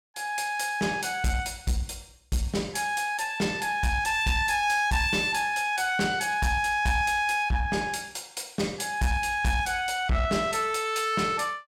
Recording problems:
distorted audio; soft clipping, signal-to-distortion ratio 11 dB

